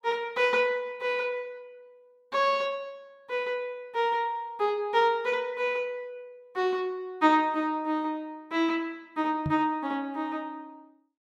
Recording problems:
microphone thump; at 9.5 s; peak 0 dB vs average level

